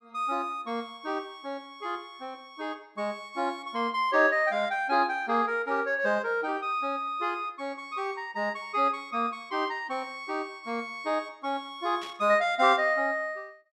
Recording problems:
burst of static; at 12 s; peak -10 dB vs average level

